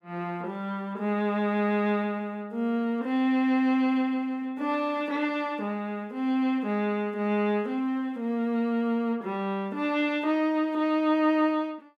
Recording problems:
none

